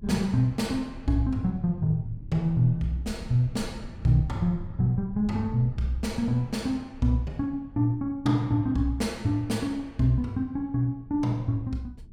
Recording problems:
low-frequency rumble; below 110 Hz, SNR 18 dB

